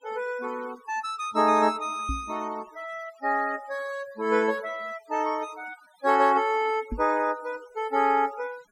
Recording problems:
noise reduction artefacts; signal-to-artefact ratio 23 dB
microphone thump; at 2 s and at 7 s; peak -2 dB vs average level

